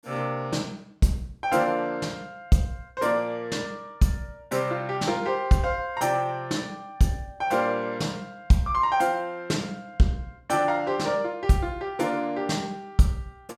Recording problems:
none

